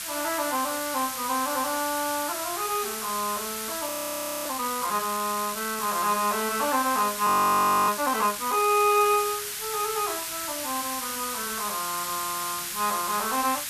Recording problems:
background hiss; SNR 4 dB
frozen audio; at 4 s for 0.5 s and at 7.5 s for 0.5 s

